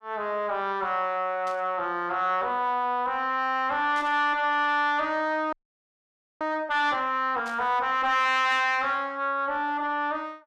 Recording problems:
distorted audio; soft clipping, signal-to-distortion ratio 10 dB
burst of static; 4 times, first at 1.5 s; peak -14 dB vs average level
frozen audio; at 5.5 s for 1 s

